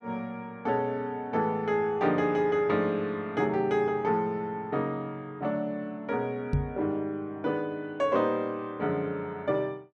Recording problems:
microphone thump; at 6.5 s; peak +5 dB vs average level

